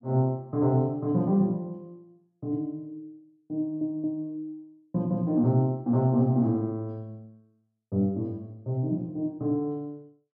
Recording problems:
stutter; at 3.5 s

